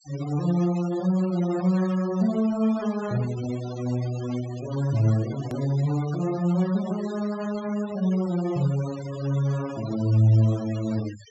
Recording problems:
treble missing; nothing above 7.7 kHz
denoising artefacts; signal-to-artefact ratio 17 dB
edit click; at 5.5 s

